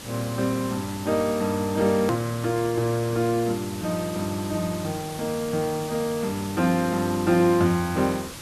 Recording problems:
background hiss; slope -2 dB per octave, SNR 13 dB
click at an edit; at 2 s

